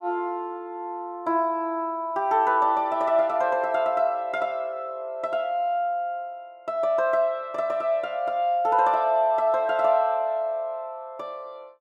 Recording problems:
none

